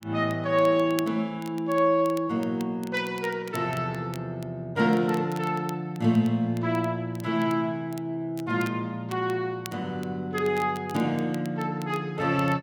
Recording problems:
crackle; vinyl, SNR 21 dB

